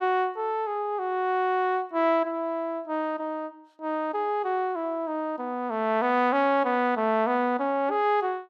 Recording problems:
none

